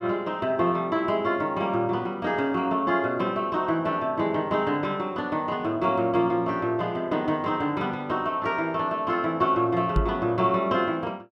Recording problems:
microphone thump; at 10 s; peak +4 dB vs average level

